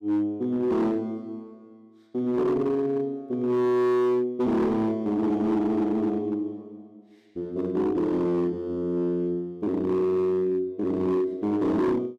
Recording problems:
distortion; hard clipping, signal-to-distortion ratio 11 dB

